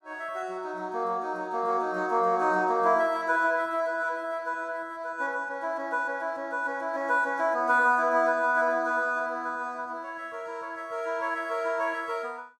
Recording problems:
none

